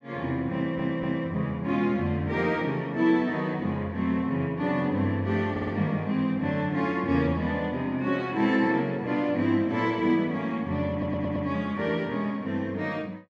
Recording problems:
stutter; at 0.5 s, at 5.5 s and at 11 s

